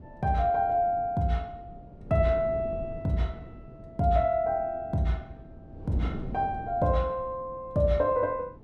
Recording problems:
wind on the microphone; below 270 Hz, SNR 15 dB

